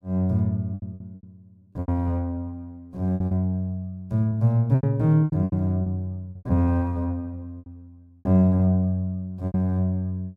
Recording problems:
lost packets; 12% of the sound replaced, filled with repeated pitch periods

